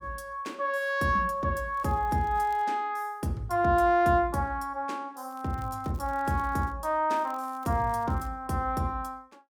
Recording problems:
crackle; at 1.5 s, from 5.5 to 7 s and from 7 to 8.5 s; loose cable, SNR 30 dB

